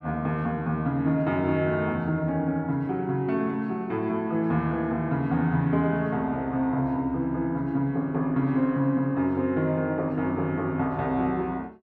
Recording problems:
none

